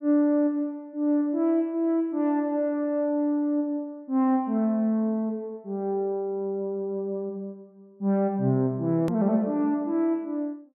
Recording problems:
hard cut with a click; at 9 s

